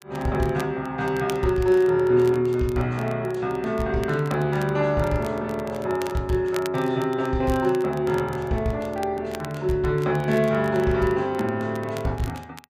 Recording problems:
crackling; vinyl, SNR 21 dB

